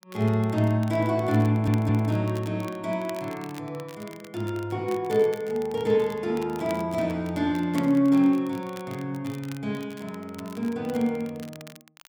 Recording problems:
crackling; vinyl, SNR 22 dB
audio stuttering; at 1.5 s

